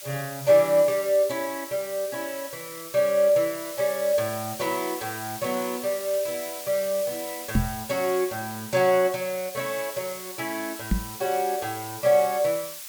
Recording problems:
background hiss; slope +3 dB per octave, SNR 11 dB
knock on the microphone; at 7.5 s and at 11 s; peak +6 dB vs average level

